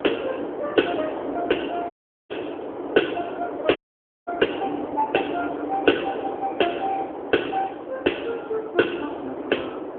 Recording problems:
phone line; 240 Hz to 3.4 kHz, AMR-NB
wind noise; below 700 Hz, SNR 7 dB
audio cutting out; at 2 s and at 4 s for 0.5 s

